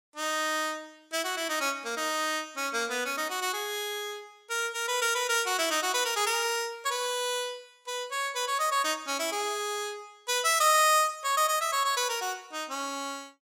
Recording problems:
none

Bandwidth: 16.5 kHz